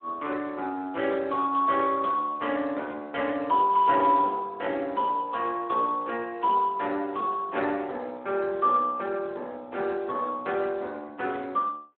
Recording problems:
telephone audio; 240 Hz to 3.3 kHz, Speex

